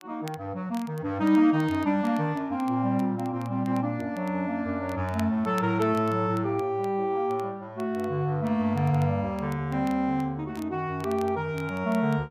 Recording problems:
crackle; vinyl, SNR 25 dB

